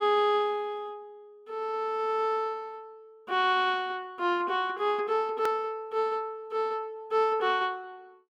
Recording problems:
edit click; at 5.5 s

